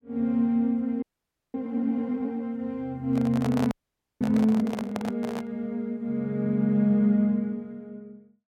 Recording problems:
audio freezing; at 1 s for 0.5 s and at 3.5 s for 0.5 s
handling noise; from 3 to 5.5 s; peak -3 dB vs average level

